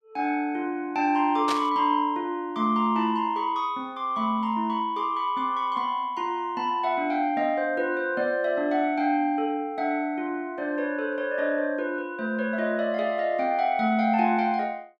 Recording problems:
static burst; at 1.5 s; peak -1 dB vs average level

